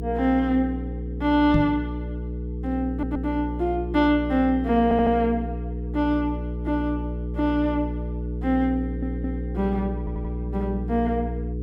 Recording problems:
hum; 60 Hz, harmonics up to 480 Hz, SNR 6 dB
knock on the microphone; at 1.5 s; peak +4 dB vs average level
stutter; 4 times, first at 3 s

